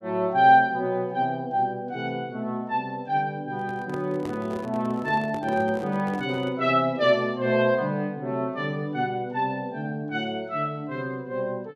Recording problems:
handling noise; from 3.5 to 6.5 s; peak -8 dB vs average level

